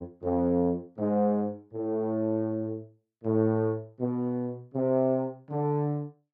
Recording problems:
none

